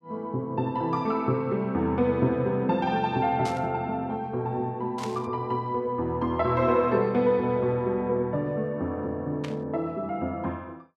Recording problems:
static burst; at 3.5 s, at 5 s and at 9.5 s; peak -8 dB vs average level

